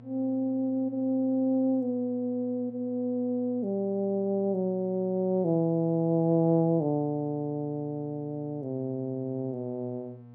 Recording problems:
electrical hum; 60 Hz, harmonics up to 840 Hz, SNR 22 dB

